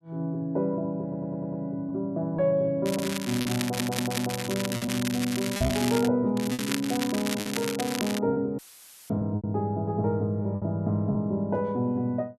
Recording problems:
packet loss; 6% of the sound replaced, filled with repeated pitch periods
audio stuttering; at 1 s and at 3.5 s
crackling; from 3 to 6 s and from 6.5 to 8 s; loose cable, SNR 6 dB
microphone thump; at 5.5 s; peak +1 dB vs average level
audio cutting out; at 8.5 s for 0.5 s; filled with static

